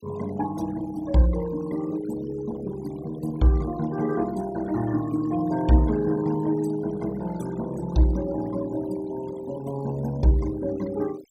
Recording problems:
noise reduction artefacts; signal-to-artefact ratio 19 dB

